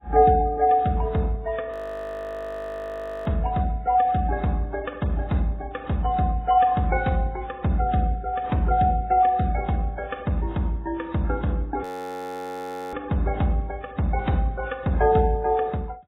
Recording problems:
codec artefacts; Vorbis, then AAC, log-spectral distance 2 dB, nothing above 16.1 kHz
audio freezing; at 1.5 s for 1.5 s and at 12 s for 1 s

